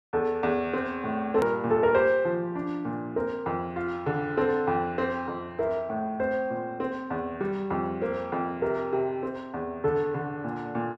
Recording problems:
edit click; at 1.5 s

